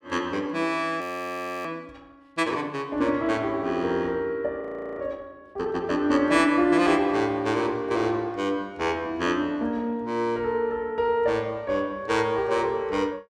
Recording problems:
audio freezing; at 1 s for 0.5 s and at 4.5 s

